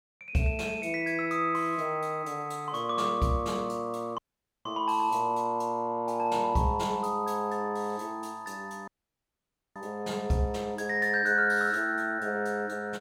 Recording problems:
dropout; at 4 s and at 9 s for 1 s

